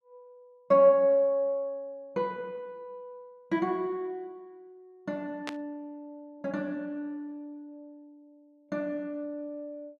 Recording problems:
static burst; at 5.5 s; peak -3 dB vs average level

